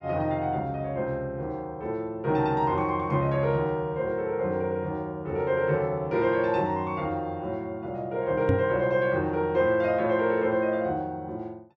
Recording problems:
microphone thump; at 8.5 s; peak +5 dB vs average level

